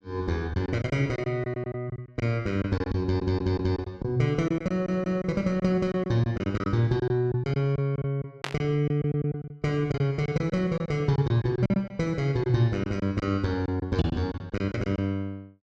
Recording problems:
lost packets; 11% of the sound replaced, filled with silence
audio stuttering; at 3 s and at 4.5 s
burst of static; at 8.5 s; peak +1 dB vs average level

